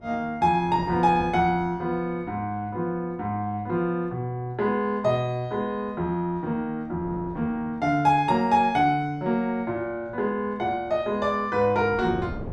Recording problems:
wind on the microphone; below 390 Hz, SNR 19 dB

